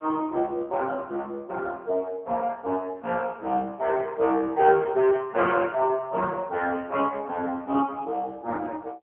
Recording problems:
telephone audio; 240 Hz to 3.3 kHz, AMR-NB

